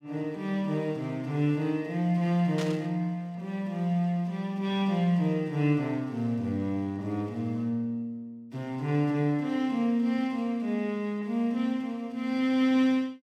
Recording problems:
burst of static; at 2.5 s; peak -6 dB vs average level

